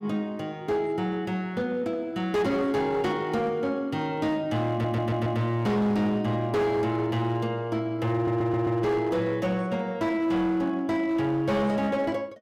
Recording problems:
distorted audio; hard clipping, uneven, signal-to-distortion ratio 11 dB
stutter; at 4.5 s and at 8 s

